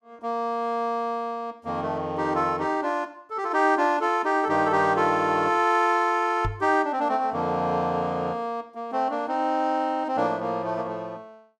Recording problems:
microphone thump; at 6.5 s; peak -2 dB vs average level

